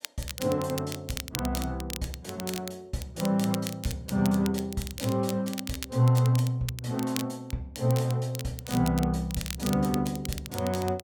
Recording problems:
crackling; vinyl, SNR 10 dB

